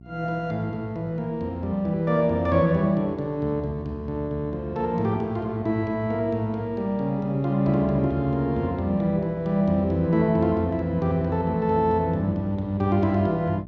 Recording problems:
hum; 60 Hz, harmonics up to 720 Hz, SNR 19 dB

